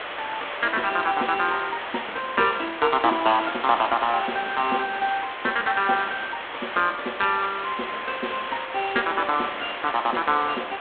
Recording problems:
phone line; 240 Hz to 3.7 kHz, G.726
hiss; SNR 8 dB

